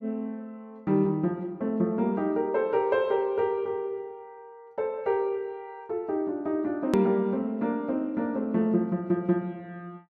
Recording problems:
edit click; at 7 s

